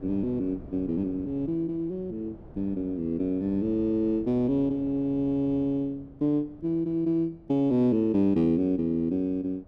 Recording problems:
wind noise; below 330 Hz, SNR 21 dB

